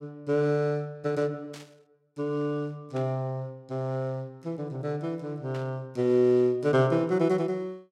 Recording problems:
static burst; at 1.5 s, at 3 s and at 5.5 s; peak -14 dB vs average level

